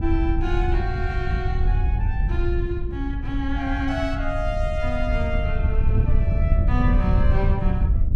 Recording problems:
wind noise; below 90 Hz, SNR -5 dB

